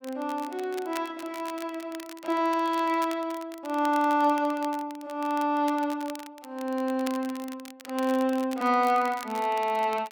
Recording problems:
crackling; vinyl, SNR 18 dB

